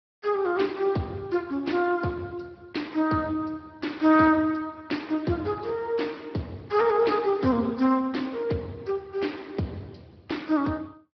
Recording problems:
treble missing; nothing above 5.3 kHz
lossy codec; Speex, log-spectral distance 4 dB

